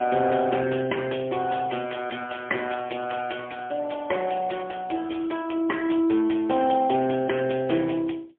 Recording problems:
phone line; 190 Hz to 3.1 kHz, AMR-NB, then MP3

